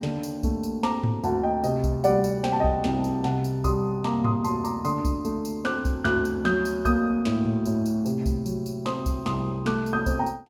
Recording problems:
none

